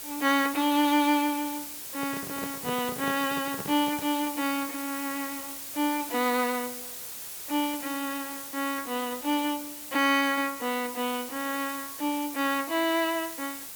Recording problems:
background hiss; slope 0 dB per octave, SNR 8 dB
microphone handling noise; from 2 to 4 s; peak -5 dB vs average level

